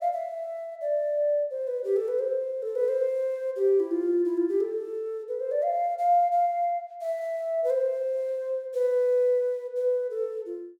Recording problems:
none

